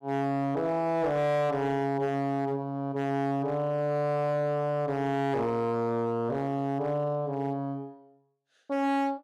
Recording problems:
distortion; hard clipping, signal-to-distortion ratio 12 dB

